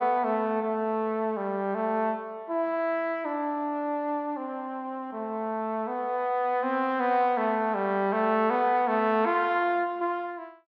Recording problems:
none

